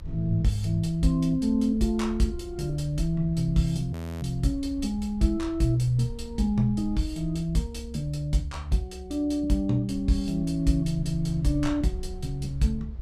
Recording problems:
low-frequency rumble; below 68 Hz, SNR 13 dB
frozen audio; at 4 s

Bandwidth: 14.5 kHz